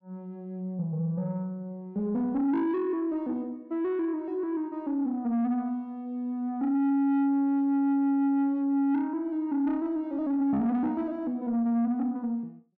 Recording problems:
distortion; soft clipping, signal-to-distortion ratio 10 dB

